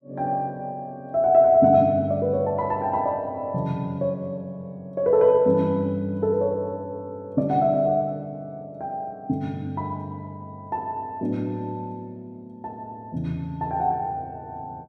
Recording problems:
none

